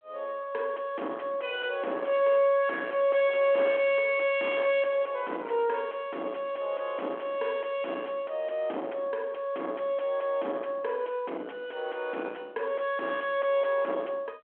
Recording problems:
telephone audio; 280 Hz to 2.7 kHz, G.726
distortion; soft clipping, signal-to-distortion ratio 7 dB

